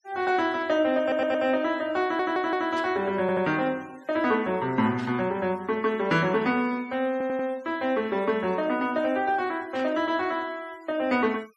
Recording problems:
denoising artefacts; signal-to-artefact ratio 25 dB
audio stuttering; 4 times, first at 1 s
static burst; at 3 s, at 5 s and at 10 s; peak -13 dB vs average level

